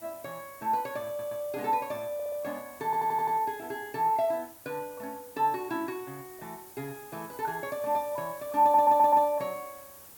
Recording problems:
background hiss; slope -3 dB per octave, SNR 19 dB
stutter; 4 times, first at 1 s

